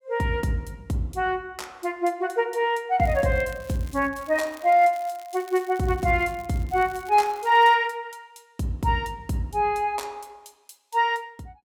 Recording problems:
crackling; from 3 to 7.5 s; loose cable, SNR 25 dB

